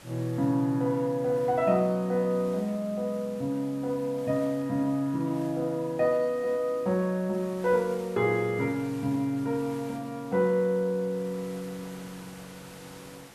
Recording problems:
background hiss; slope -3 dB per octave, SNR 21 dB

